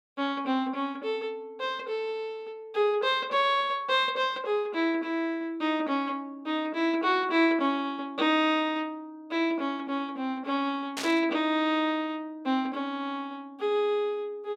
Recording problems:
static burst; at 11 s; peak -2 dB vs average level

